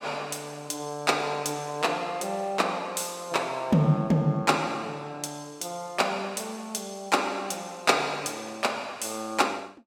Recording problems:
none

